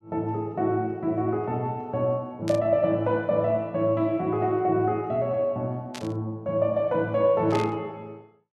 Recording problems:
static burst; at 2.5 s, at 6 s and at 7.5 s; peak -6 dB vs average level

